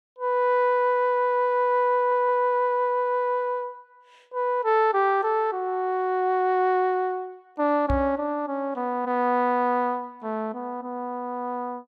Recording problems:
stutter; at 2 s
microphone bump; at 8 s; peak 0 dB vs average level

